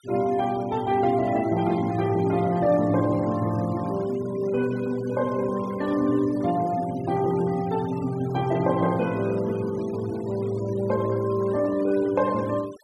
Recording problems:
denoising artefacts; signal-to-artefact ratio 20 dB

